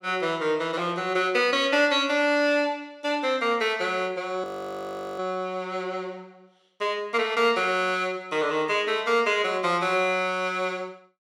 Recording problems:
frozen audio; at 4.5 s for 1 s

